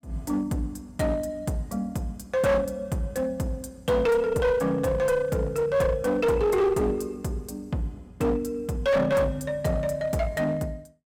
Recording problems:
distortion; hard clipping, uneven, signal-to-distortion ratio 9 dB

